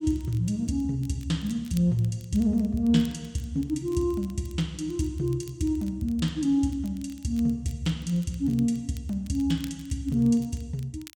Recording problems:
crackle; vinyl, SNR 25 dB

